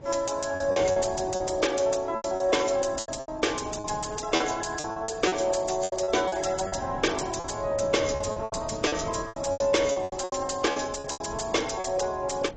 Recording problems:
codec artefacts; AAC, log-spectral distance 5 dB, nothing above 7.6 kHz
distortion; soft clipping, signal-to-distortion ratio 11 dB
wind on the microphone; below 440 Hz, SNR 16 dB
lost packets; 13% of the sound replaced, filled with repeated pitch periods

